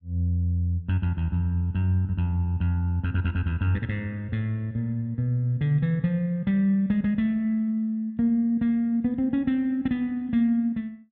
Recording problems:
none

